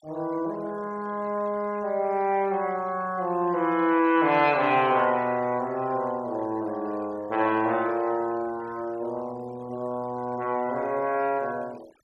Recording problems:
noise reduction artefacts; signal-to-artefact ratio 24 dB

